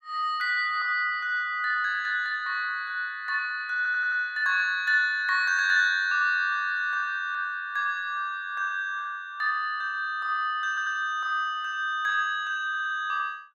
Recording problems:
audio stuttering; at 4 s, at 11 s and at 13 s

